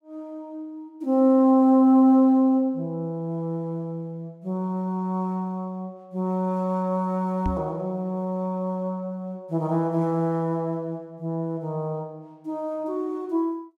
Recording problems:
microphone bump; at 7.5 s; peak -1 dB vs average level

